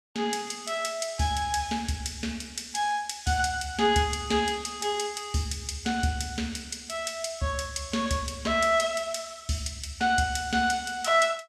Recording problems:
none

